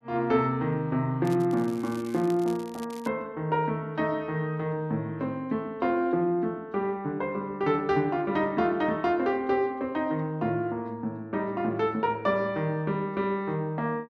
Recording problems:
crackle; from 1 to 3 s; loose cable, SNR 22 dB

